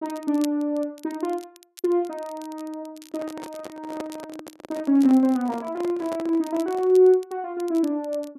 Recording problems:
crackle; vinyl, SNR 25 dB
microphone handling noise; from 3 to 7 s; peak -7 dB vs average level

